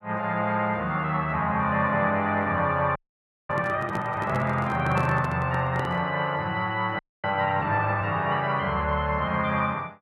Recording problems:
microphone handling noise; from 3 to 6 s; peak -2 dB vs average level
audio freezing; at 3 s for 0.5 s and at 7 s

